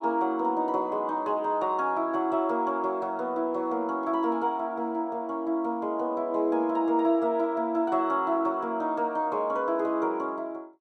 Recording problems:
none

